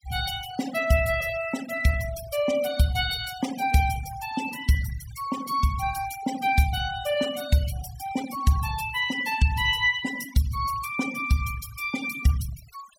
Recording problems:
noise reduction artefacts; signal-to-artefact ratio 13 dB

